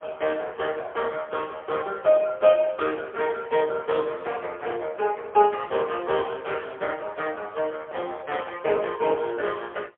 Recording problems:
telephone audio; 320 Hz to 3.4 kHz, AMR-NB, then MP3

